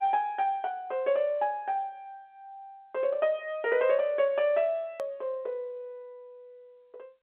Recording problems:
telephone audio; 300 Hz to 3.4 kHz, G.711
click at an edit; at 5 s

